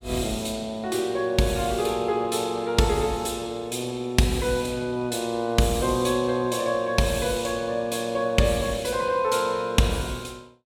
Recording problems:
none

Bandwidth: 16.5 kHz